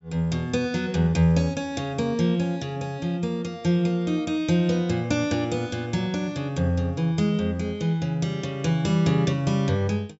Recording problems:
treble missing; nothing above 8 kHz

